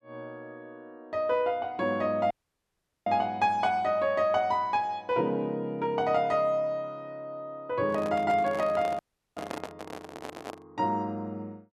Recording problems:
audio cutting out; at 2.5 s for 1 s and at 9 s
microphone handling noise; from 8 to 11 s; peak -4 dB vs average level

